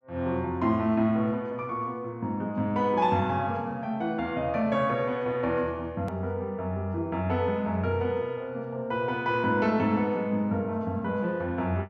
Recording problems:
hard cut with a click; at 6 s

